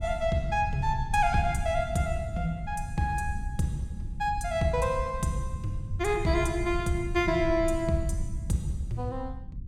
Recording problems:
low-frequency rumble; below 96 Hz, SNR 8 dB

